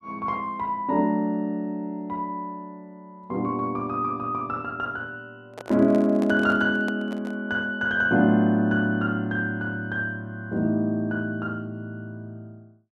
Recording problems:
microphone handling noise; from 5.5 to 7.5 s; peak -6 dB vs average level

